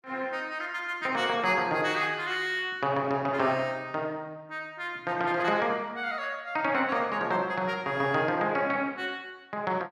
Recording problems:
none

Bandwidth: 13.5 kHz